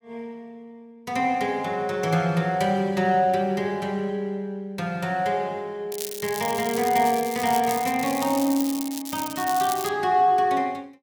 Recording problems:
crackle; from 6 to 10 s; loose cable, SNR 10 dB

